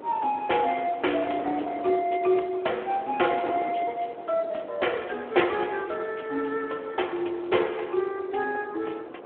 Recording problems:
phone line; 280 Hz to 3.3 kHz, Speex
wind noise; below 720 Hz, SNR 13 dB

